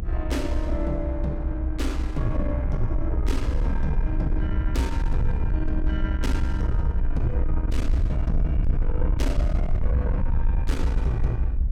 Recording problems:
distortion; soft clipping, signal-to-distortion ratio 11 dB
low-frequency rumble; below 66 Hz, SNR -5 dB

